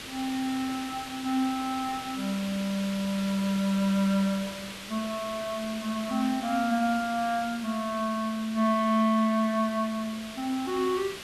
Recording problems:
background hiss; SNR 11 dB

